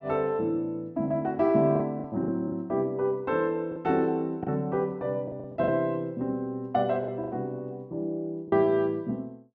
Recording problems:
packet loss; 6% of the sound replaced, filled with the last packet

